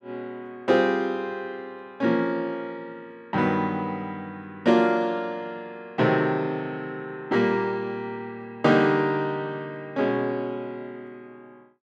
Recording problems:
none

